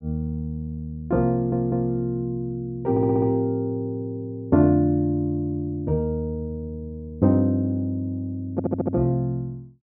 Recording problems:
audio stuttering; at 1.5 s, at 3 s and at 8.5 s

